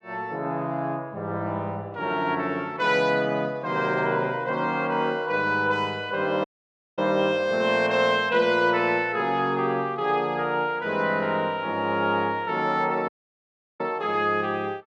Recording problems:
audio cutting out; at 6.5 s for 0.5 s and at 13 s for 0.5 s

